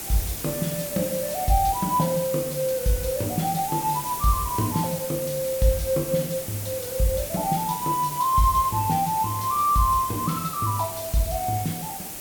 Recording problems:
background hiss; SNR 7 dB

